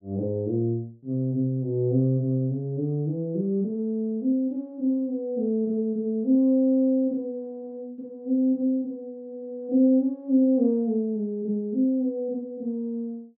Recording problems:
none

